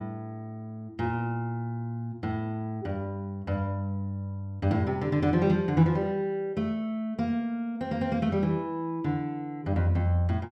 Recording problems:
none

